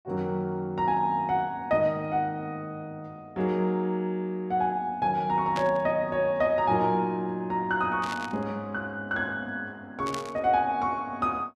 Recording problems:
static burst; at 5.5 s, at 8 s and at 10 s; peak -4 dB vs average level

